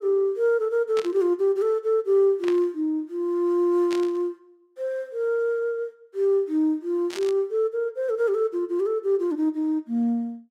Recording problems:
static burst; 4 times, first at 1 s; peak -7 dB vs average level

